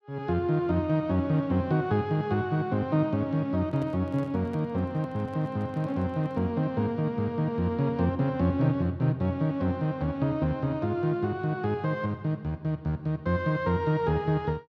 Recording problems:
handling noise; from 3.5 to 6.5 s; peak -13 dB vs average level

